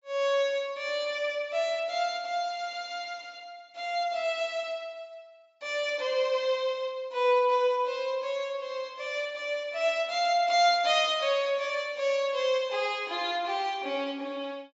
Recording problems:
treble cut off; nothing above 8 kHz

